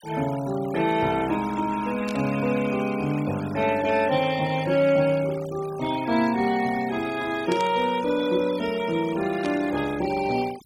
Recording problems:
noise reduction artefacts; signal-to-artefact ratio 17 dB
static burst; at 2 s, at 7.5 s and at 9.5 s; peak -8 dB vs average level

